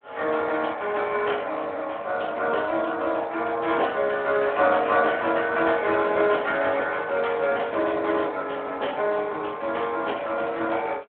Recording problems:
telephone audio; 320 Hz to 3.4 kHz, Speex

